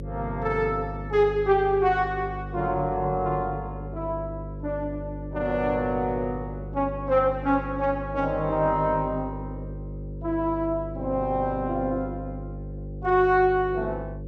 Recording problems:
mains hum; 50 Hz, harmonics up to 550 Hz, SNR 10 dB

